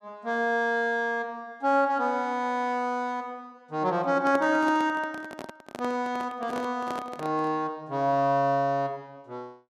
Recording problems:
handling noise; from 4 to 7.5 s; peak -5 dB vs average level

